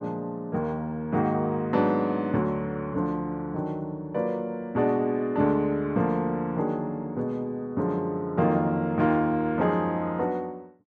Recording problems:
none

